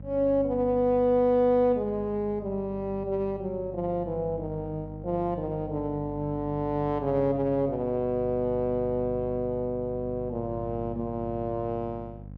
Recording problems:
hum; 50 Hz, harmonics up to 550 Hz, SNR 14 dB

